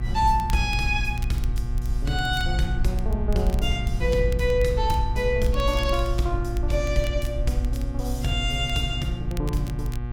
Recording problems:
hum; 60 Hz, harmonics up to 1.6 kHz, SNR 9 dB
low-frequency rumble; below 56 Hz, SNR 2 dB
crackling; vinyl, SNR 21 dB

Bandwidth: 17 kHz